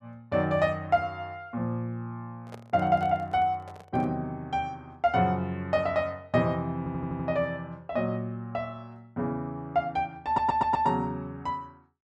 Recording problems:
handling noise; from 2.5 to 4 s; peak -11 dB vs average level
stutter; at 7 s and at 10 s

